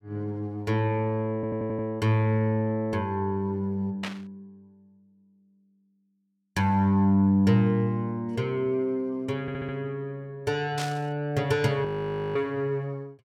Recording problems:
stutter; at 1.5 s and at 9.5 s
static burst; at 4 s and at 11 s; peak -3 dB vs average level
audio freezing; at 12 s for 0.5 s

